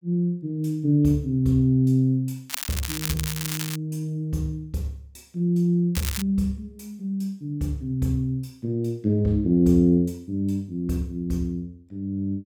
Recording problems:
crackling; from 2.5 to 4 s and at 6 s; loose cable, SNR 7 dB

